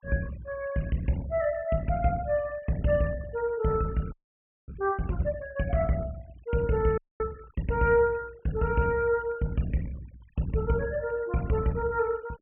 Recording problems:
low-pass filter; nothing above 3.1 kHz
denoising artefacts; signal-to-artefact ratio 22 dB
audio freezing; at 4 s for 0.5 s and at 7 s

